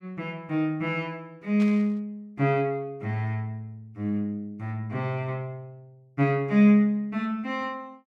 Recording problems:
burst of static; at 1.5 s; peak -13 dB vs average level

